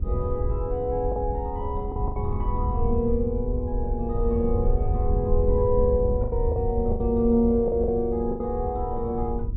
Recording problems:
treble cut off; nothing above 4 kHz
hum; 50 Hz, harmonics up to 400 Hz, SNR 22 dB
wind on the microphone; below 86 Hz, SNR 3 dB
packet loss; 5% of the sound replaced, filled with the last packet

